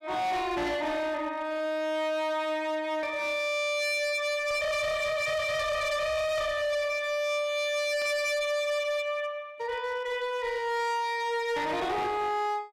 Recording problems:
distortion; hard clipping, signal-to-distortion ratio 8 dB
burst of static; at 8 s; peak -13 dB vs average level

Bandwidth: 14.5 kHz